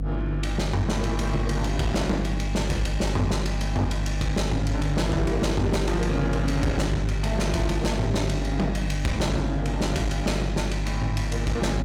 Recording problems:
distortion; hard clipping, uneven, signal-to-distortion ratio 9 dB
hum; 50 Hz, harmonics up to 300 Hz, SNR 2 dB

